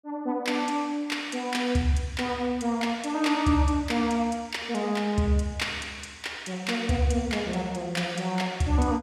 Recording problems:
none

